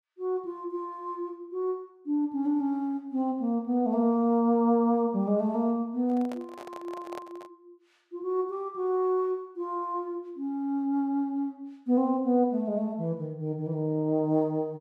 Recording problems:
microphone handling noise; from 6 to 7.5 s; peak -9 dB vs average level

